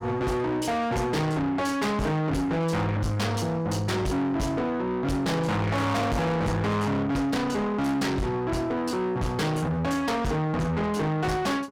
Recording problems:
distorted audio; soft clipping, signal-to-distortion ratio 6 dB

